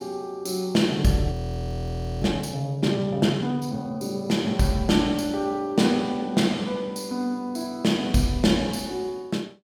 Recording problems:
audio freezing; at 1.5 s for 1 s

